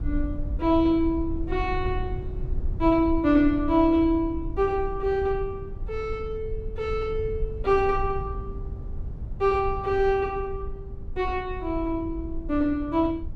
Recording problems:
low-frequency rumble; below 78 Hz, SNR 10 dB

